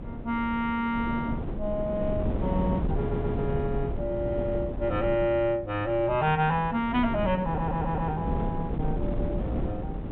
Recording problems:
treble cut off; nothing above 4 kHz
wind on the microphone; below 280 Hz, SNR 4 dB
stutter; at 3 s and at 7.5 s

